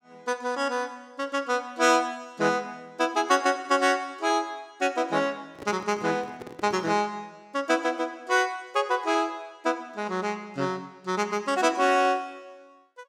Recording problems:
microphone handling noise; from 5.5 to 7 s; peak -10 dB vs average level

